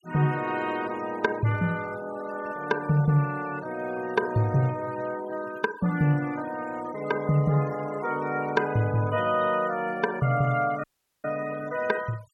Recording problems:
noise reduction artefacts; signal-to-artefact ratio 18 dB
dropout; at 11 s

